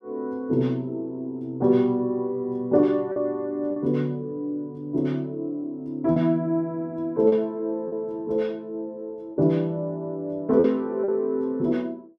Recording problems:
lost packets; 3% of the sound replaced, filled with repeated pitch periods

